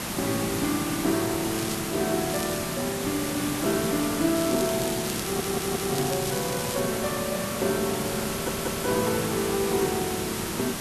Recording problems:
background hiss; slope -3 dB per octave, SNR 2 dB
crackling; at 1.5 s, at 2.5 s and from 4.5 to 7 s; loose cable, SNR 8 dB
stutter; at 5 s and at 8.5 s

